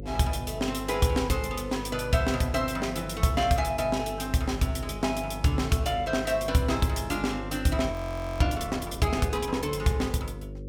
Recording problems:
hum; 50 Hz, harmonics up to 550 Hz, SNR 12 dB
frozen audio; at 8 s

